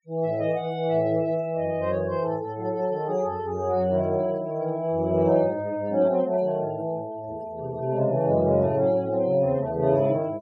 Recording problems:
denoising artefacts; signal-to-artefact ratio 26 dB

